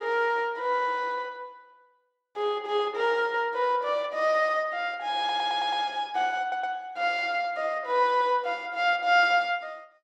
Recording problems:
audio stuttering; at 5 s and at 6.5 s

